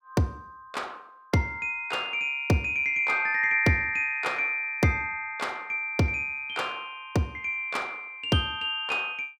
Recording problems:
none

